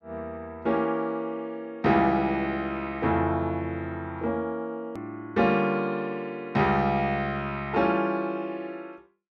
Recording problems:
edit click; at 5 s

